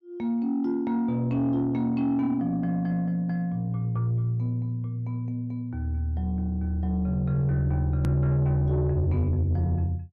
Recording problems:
distorted audio; soft clipping, signal-to-distortion ratio 11 dB
click at an edit; at 8 s

